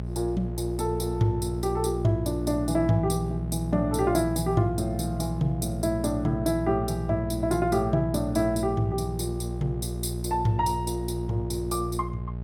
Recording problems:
hum; 60 Hz, harmonics up to 660 Hz, SNR 5 dB

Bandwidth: 17 kHz